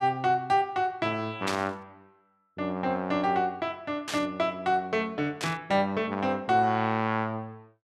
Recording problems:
static burst; at 1.5 s, at 4 s and at 5.5 s; peak 0 dB vs average level

